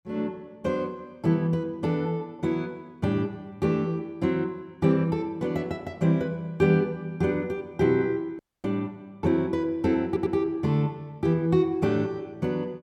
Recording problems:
dropout; at 8.5 s
audio stuttering; at 10 s

